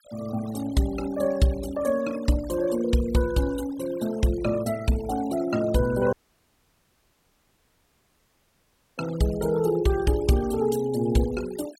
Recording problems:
denoising artefacts; signal-to-artefact ratio 16 dB
dropout; at 6 s for 3 s

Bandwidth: 16.5 kHz